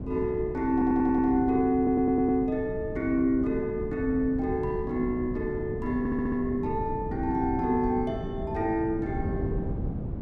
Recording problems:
wind noise; below 250 Hz, SNR 8 dB
audio stuttering; at 0.5 s, at 2 s and at 6 s

